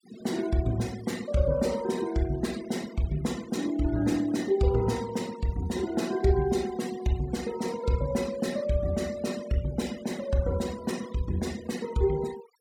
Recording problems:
noise reduction artefacts; signal-to-artefact ratio 18 dB

